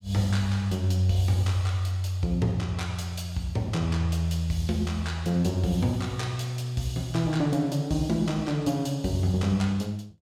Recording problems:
none

